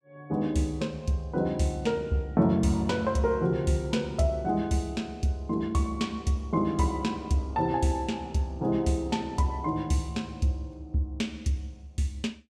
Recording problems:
none

